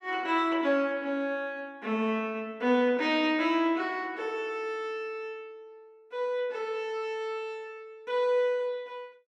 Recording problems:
none

